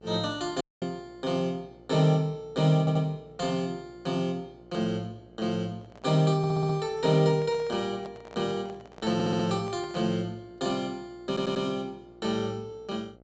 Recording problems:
treble cut off; nothing above 8 kHz
hum; 60 Hz, harmonics up to 1.4 kHz, SNR 26 dB
dropout; at 0.5 s
audio stuttering; 4 times, first at 3 s
handling noise; from 6 to 10 s; peak -10 dB vs average level

